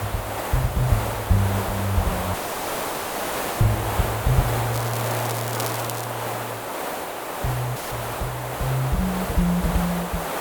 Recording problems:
hiss; SNR 2 dB
dropout; at 2.5 s for 1.5 s and at 8 s; filled with static
crackle; from 4.5 to 6 s; loose cable, SNR 8 dB

